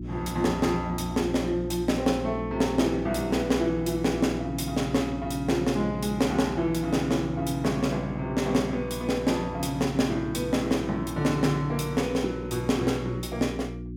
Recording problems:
hum; 60 Hz, harmonics up to 360 Hz, SNR 10 dB

